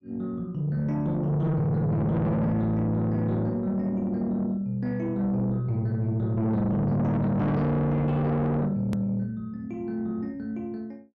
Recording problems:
distorted audio; soft clipping, signal-to-distortion ratio 7 dB
click at an edit; at 9 s

